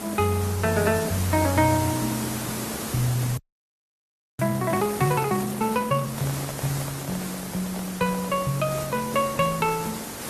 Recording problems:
lossy codec; Opus, log-spectral distance 8 dB
hiss; slope -4 dB per octave, SNR 7 dB
audio freezing; at 3.5 s for 1 s
handling noise; from 5.5 to 8.5 s; peak -7 dB vs average level

